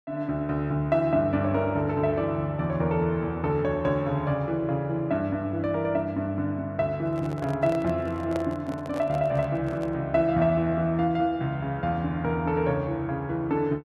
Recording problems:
microphone handling noise; from 7 to 10 s; peak -4 dB vs average level

